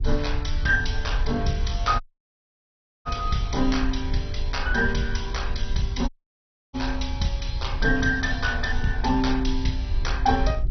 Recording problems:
lossy compression; MP2, log-spectral distance 3 dB, nothing above 6 kHz
low-frequency rumble; below 66 Hz, SNR 4 dB
audio cutting out; at 2 s for 1 s and at 6 s for 0.5 s

